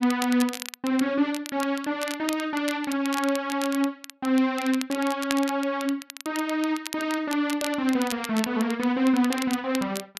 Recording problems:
crackle; vinyl, SNR 11 dB

